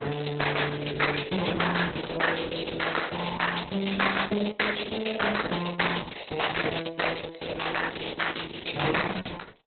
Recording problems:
lossy codec; Opus, log-spectral distance 14 dB, nothing above 4.1 kHz

